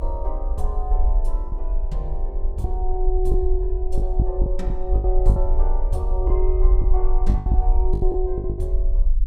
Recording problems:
rumble; below 48 Hz, strongest tone 24 Hz, SNR -6 dB
packet loss; 8% of the sound replaced, filled with the last packet

